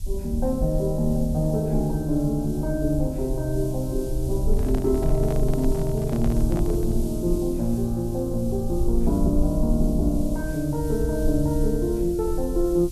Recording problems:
background hiss; SNR 20 dB
low-frequency rumble; below 56 Hz, SNR 6 dB
microphone handling noise; from 4.5 to 7 s; peak -8 dB vs average level

